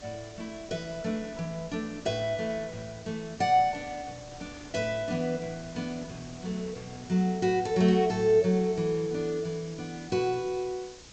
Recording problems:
treble cut off; nothing above 8 kHz
hiss; slope +4 dB per octave, SNR 21 dB
wind on the microphone; below 910 Hz, SNR 22 dB

